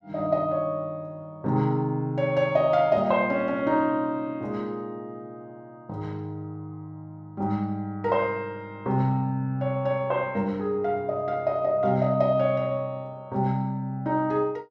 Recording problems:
none

